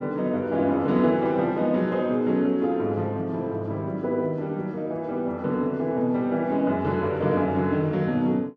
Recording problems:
none

